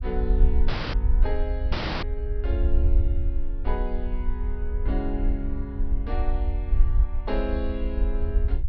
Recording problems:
low-pass filter; nothing above 5.5 kHz
low-frequency rumble; below 56 Hz, SNR -7 dB
audio cutting out; at 0.5 s and at 1.5 s

